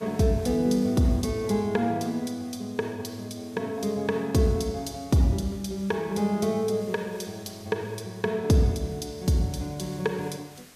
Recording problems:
hiss; slope -2 dB per octave, SNR 25 dB

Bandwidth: 14.5 kHz